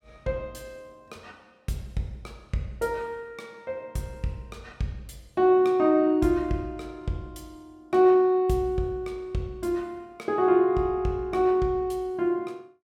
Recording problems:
none

